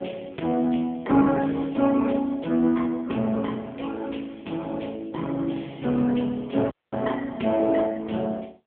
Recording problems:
telephone audio; 190 Hz to 3.3 kHz, AMR-NB
audio cutting out; at 6.5 s

